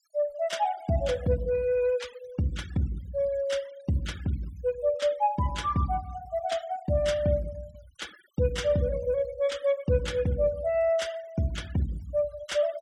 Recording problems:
noise reduction artefacts; signal-to-artefact ratio 20 dB

